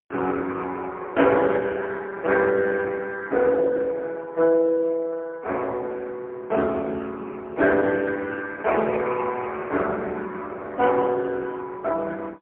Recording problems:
telephone audio; 280 Hz to 3.3 kHz, AMR-NB, then MP3

